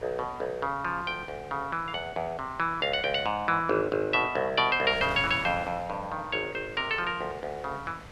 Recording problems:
wind on the microphone; below 1.8 kHz, SNR 17 dB

